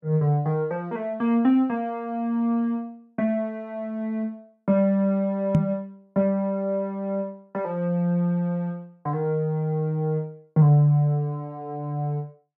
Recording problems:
knock on the microphone; at 5.5 s; peak +8 dB vs average level

